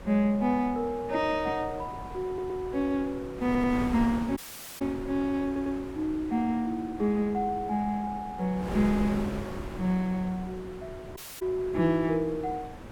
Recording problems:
wind noise; below 660 Hz, SNR 12 dB
audio stuttering; at 2.5 s, at 3.5 s and at 5.5 s
dropout; at 4.5 s and at 11 s

